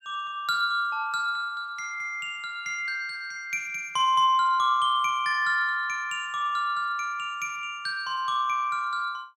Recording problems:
none

